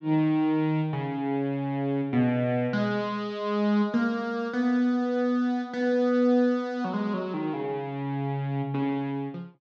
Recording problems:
none

